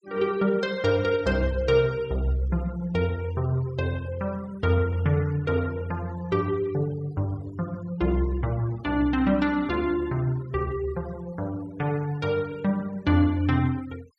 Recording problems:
noise reduction artefacts; signal-to-artefact ratio 24 dB

